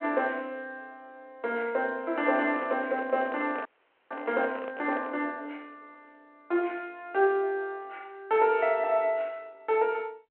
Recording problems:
telephone audio; 300 Hz to 3.3 kHz, G.726
microphone handling noise; from 2 to 5 s; peak -6 dB vs average level
audio freezing; at 3.5 s

